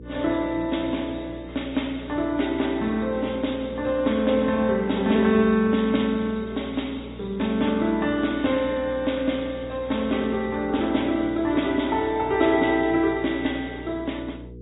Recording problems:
treble missing; nothing above 3.8 kHz
lossy compression; MP3, then MP3, log-spectral distance 3 dB
hum; 60 Hz, harmonics up to 480 Hz, SNR 17 dB

